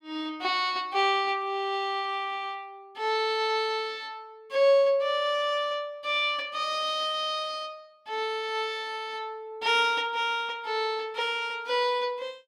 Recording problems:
none

